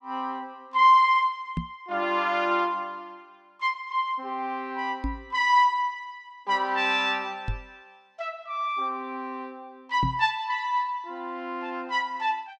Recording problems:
microphone thump; 4 times, first at 1.5 s; peak 0 dB vs average level

